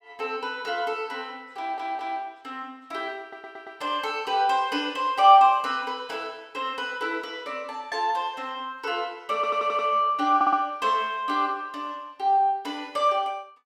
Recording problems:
stutter; 4 times, first at 1.5 s

